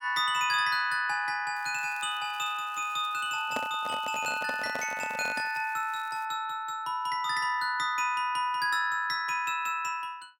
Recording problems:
crackling; from 1.5 to 6.5 s; loose cable, SNR 26 dB
microphone handling noise; from 3.5 to 5.5 s; peak -1 dB vs average level

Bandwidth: 17 kHz